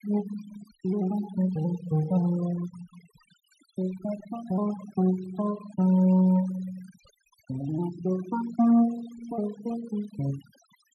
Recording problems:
noise reduction artefacts; signal-to-artefact ratio 19 dB

